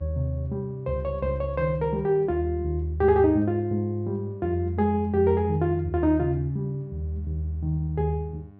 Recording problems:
electrical hum; 50 Hz, harmonics up to 1.1 kHz, SNR 25 dB

